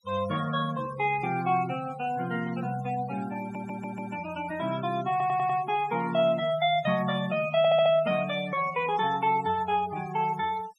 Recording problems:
denoising artefacts; signal-to-artefact ratio 17 dB
stutter; at 3.5 s, at 5 s and at 7.5 s

